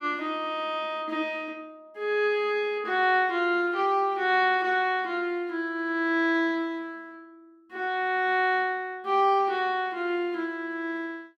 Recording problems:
none

